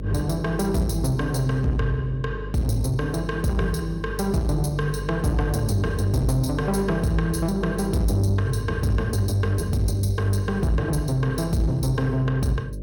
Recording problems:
distortion; soft clipping, signal-to-distortion ratio 12 dB
hum; 50 Hz, harmonics up to 600 Hz, SNR 10 dB

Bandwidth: 17 kHz